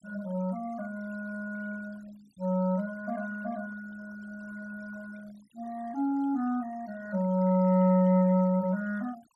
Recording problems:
noise reduction artefacts; signal-to-artefact ratio 26 dB

